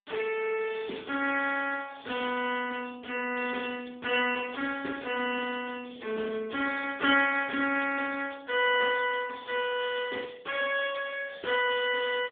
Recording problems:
phone line; 220 Hz to 3.4 kHz, AMR-NB

